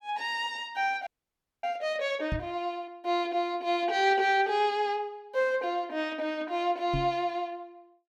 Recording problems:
frozen audio; at 1 s for 0.5 s
microphone bump; at 2.5 s and at 7 s; peak 0 dB vs average level

